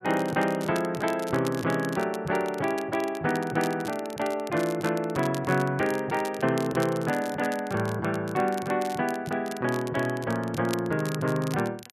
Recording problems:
crackling; vinyl, SNR 16 dB

